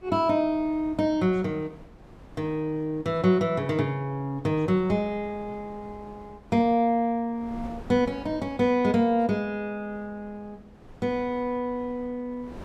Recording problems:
wind noise; below 480 Hz, SNR 22 dB

